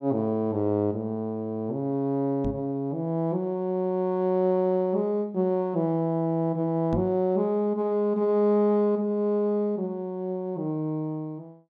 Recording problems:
microphone thump; at 2.5 s and at 7 s; peak 0 dB vs average level

